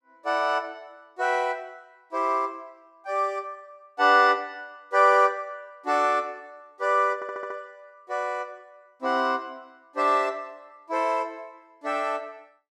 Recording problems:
audio stuttering; at 7 s

